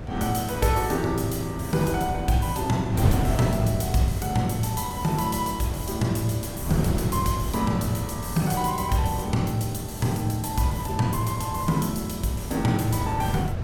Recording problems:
hum; 60 Hz, harmonics up to 720 Hz, SNR 21 dB
wind noise; below 240 Hz, SNR 6 dB

